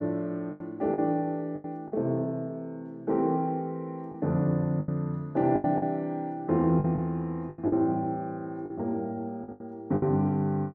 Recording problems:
lost packets; 8% of the sound replaced, filled with the last packet

